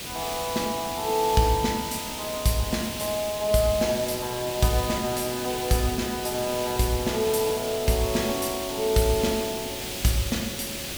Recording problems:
background hiss; SNR 6 dB

